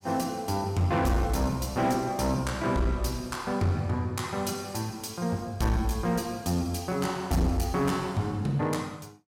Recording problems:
distortion; hard clipping, uneven, signal-to-distortion ratio 10 dB

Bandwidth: 16 kHz